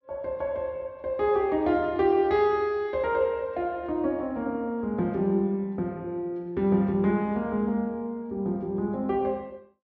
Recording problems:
low-pass filter; nothing above 6.9 kHz

